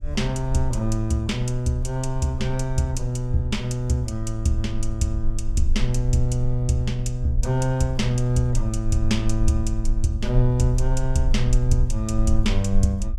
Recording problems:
low-frequency rumble; below 42 Hz, strongest tone 20 Hz, SNR 6 dB

